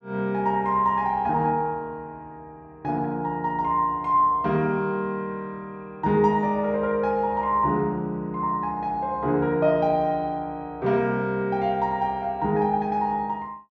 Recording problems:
none

